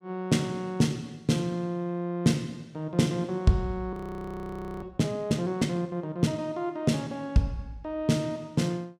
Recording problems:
frozen audio; at 4 s for 1 s

